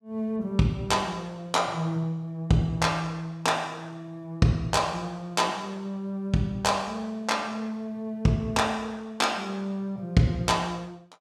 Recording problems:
none

